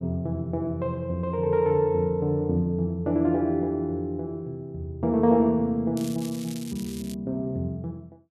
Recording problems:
crackling; from 6 to 7 s; loose cable, SNR 17 dB

